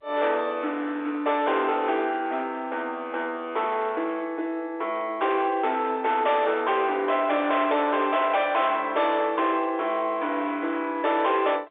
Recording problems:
telephone audio; 300 Hz to 3.7 kHz, G.711
distorted audio; hard clipping, signal-to-distortion ratio 11 dB

